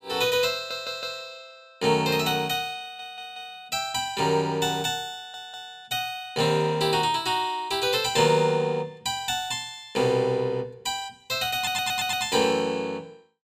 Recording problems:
audio stuttering; 4 times, first at 0.5 s

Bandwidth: 15.5 kHz